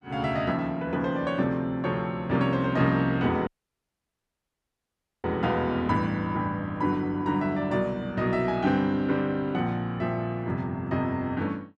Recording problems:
audio cutting out; at 3.5 s for 2 s

